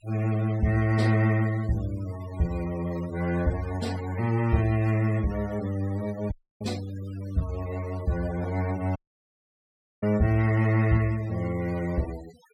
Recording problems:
noise reduction artefacts; signal-to-artefact ratio 19 dB
dropout; at 6.5 s and at 9 s for 1 s

